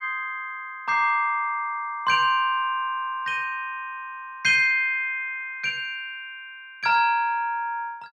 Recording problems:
none

